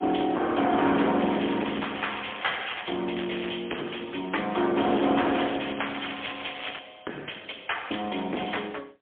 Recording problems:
telephone audio; 220 Hz to 3.4 kHz, AMR-NB, then MP3
distorted audio; hard clipping, uneven, signal-to-distortion ratio 4 dB
crackling; from 0.5 to 3 s, at 3 s and from 5 to 7 s; loose cable, SNR 10 dB

